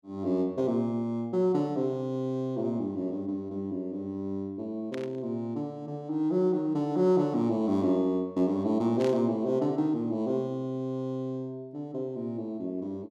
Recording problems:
static burst; at 5 s and at 9 s; peak -8 dB vs average level

